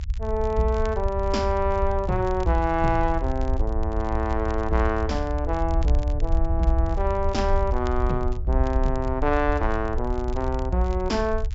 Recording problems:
low-pass filter; nothing above 8 kHz
rumble; below 70 Hz, SNR 3 dB
crackle; vinyl, SNR 24 dB

